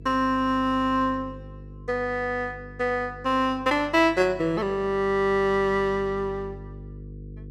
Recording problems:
electrical hum; 50 Hz, harmonics up to 500 Hz, SNR 18 dB

